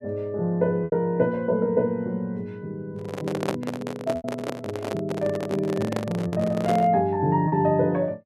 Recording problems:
lost packets; 3% of the sound replaced, filled with repeated pitch periods
handling noise; from 3 to 7 s; peak +2 dB vs average level

